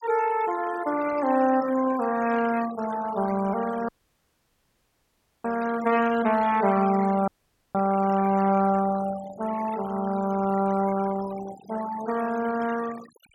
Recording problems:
denoising artefacts; signal-to-artefact ratio 14 dB
dropout; at 4 s for 1.5 s and at 7.5 s

